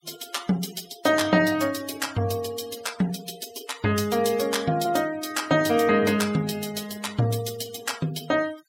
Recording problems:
denoising artefacts; signal-to-artefact ratio 17 dB

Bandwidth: 16.5 kHz